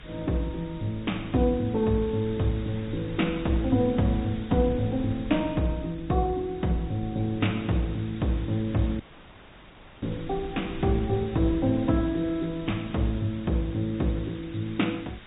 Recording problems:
treble cut off; nothing above 3.8 kHz
lossy codec; MP3, log-spectral distance 6 dB
background hiss; SNR 20 dB
rumble; below 130 Hz, SNR 17 dB
audio cutting out; at 9 s for 1 s

